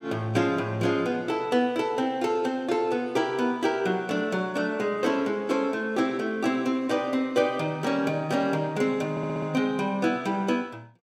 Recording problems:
audio stuttering; at 9 s

